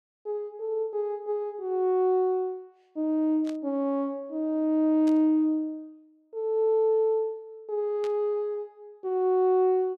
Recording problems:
burst of static; at 3.5 s, at 5 s and at 8 s; peak -14 dB vs average level

